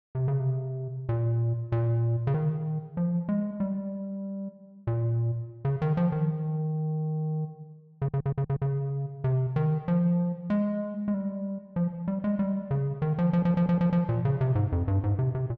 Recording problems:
stutter; at 8 s and at 13 s

